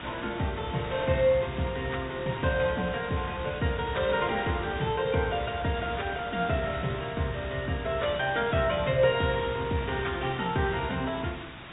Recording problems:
treble cut off; nothing above 3.8 kHz
background hiss; SNR 12 dB

